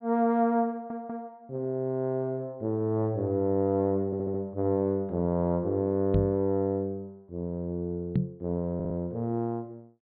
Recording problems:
treble missing; nothing above 4.3 kHz
audio stuttering; at 0.5 s, at 4 s and at 9 s
microphone thump; at 6 s and at 8 s; peak +6 dB vs average level

